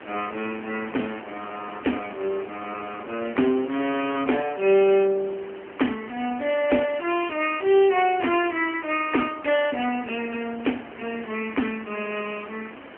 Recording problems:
telephone audio; 220 Hz to 3.1 kHz, AMR-NB
background hiss; SNR 16 dB

